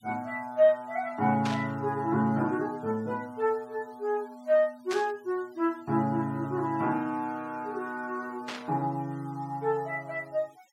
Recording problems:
denoising artefacts; signal-to-artefact ratio 27 dB
burst of static; at 1.5 s, at 5 s and at 8.5 s; peak -3 dB vs average level

